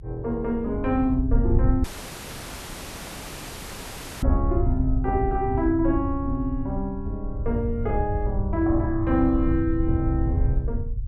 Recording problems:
low-frequency rumble; below 92 Hz, SNR 2 dB
dropout; at 2 s for 2.5 s

